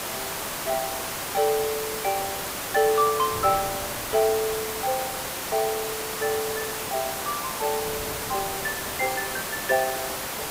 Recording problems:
hiss; slope -3 dB per octave, SNR 2 dB
wind on the microphone; below 570 Hz, SNR 20 dB

